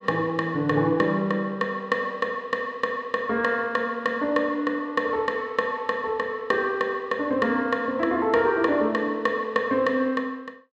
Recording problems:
none

